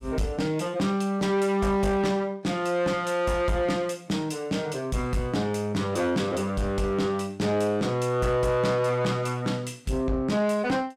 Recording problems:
distortion; soft clipping, signal-to-distortion ratio 11 dB

